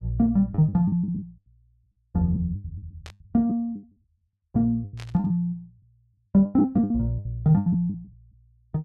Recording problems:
lost packets; 17% of the sound replaced, filled with the last packet
static burst; at 3 s and at 5 s; peak -14 dB vs average level

